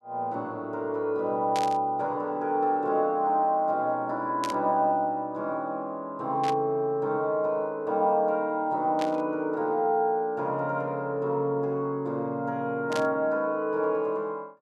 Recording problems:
static burst; 5 times, first at 1.5 s; peak -3 dB vs average level

